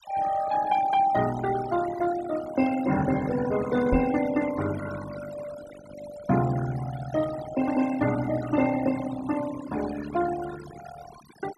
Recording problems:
noise reduction artefacts; signal-to-artefact ratio 14 dB
microphone thump; at 4 s; peak +2 dB vs average level

